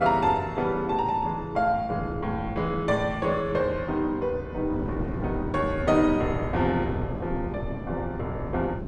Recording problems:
wind noise; below 310 Hz, SNR 9 dB

